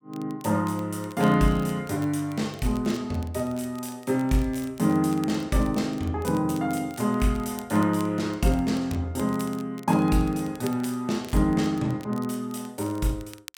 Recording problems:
crackling; vinyl, SNR 23 dB

